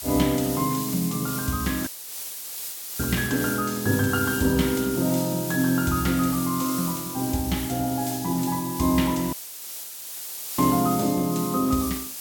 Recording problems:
hiss; slope +2 dB per octave, SNR 7 dB
dropout; at 2 s for 1 s and at 9.5 s for 1.5 s

